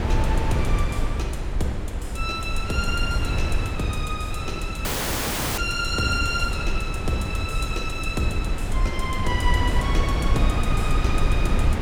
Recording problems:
wind noise; below 110 Hz, SNR -2 dB
dropout; at 5 s for 0.5 s

